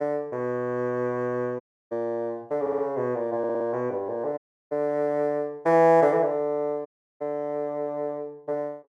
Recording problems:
audio cutting out; at 1.5 s, at 4.5 s and at 7 s
audio stuttering; at 2.5 s and at 3.5 s

